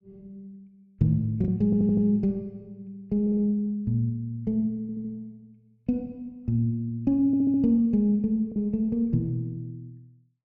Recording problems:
packet loss; 1% of the sound replaced, filled with the last packet
stutter; 4 times, first at 1.5 s

